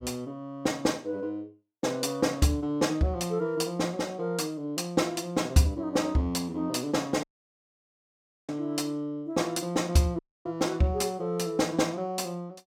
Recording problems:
audio cutting out; at 7 s for 1.5 s and at 10 s

